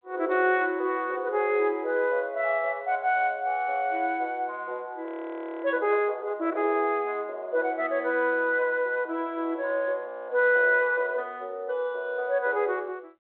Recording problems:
telephone audio; 280 Hz to 3.7 kHz, G.726
frozen audio; at 5 s for 0.5 s and at 10 s

